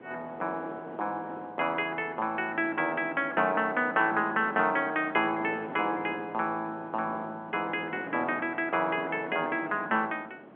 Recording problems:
telephone audio; 170 Hz to 3.5 kHz, G.711
wind noise; below 780 Hz, SNR 15 dB

